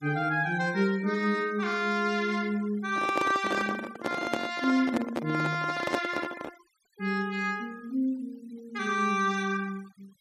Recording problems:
noise reduction artefacts; signal-to-artefact ratio 22 dB
handling noise; from 3 to 6.5 s; peak +4 dB vs average level

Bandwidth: 14.5 kHz